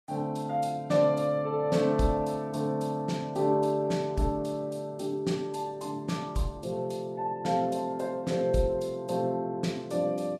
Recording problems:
lossy compression; Vorbis, log-spectral distance 2 dB, nothing above 12.3 kHz

